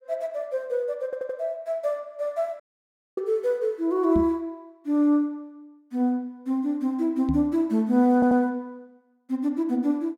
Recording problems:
stutter; at 1 s and at 8 s
audio cutting out; at 2.5 s for 0.5 s
knock on the microphone; at 4 s and at 7.5 s; peak +1 dB vs average level

